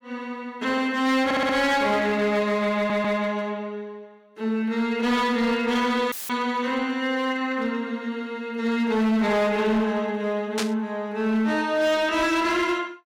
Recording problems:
distortion; hard clipping, signal-to-distortion ratio 12 dB
stutter; at 1.5 s and at 3 s
dropout; at 6 s; filled with static
burst of static; at 11 s; peak +1 dB vs average level

